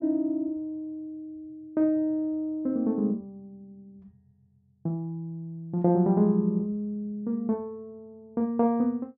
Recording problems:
none

